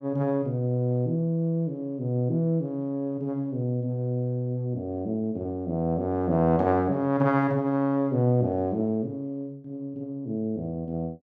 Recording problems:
none

